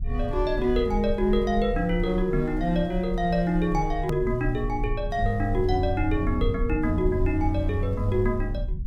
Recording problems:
rumble; below 60 Hz, strongest tone 34 Hz, SNR 7 dB
hard cut with a click; at 4 s

